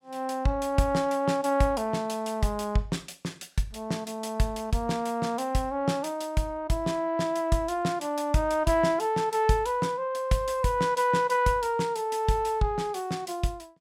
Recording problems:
none

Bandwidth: 16.5 kHz